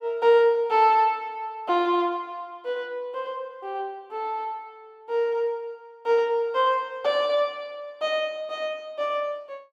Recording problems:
none

